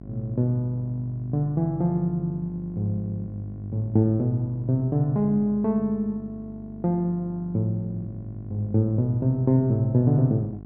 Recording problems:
hum; 50 Hz, harmonics up to 800 Hz, SNR 16 dB

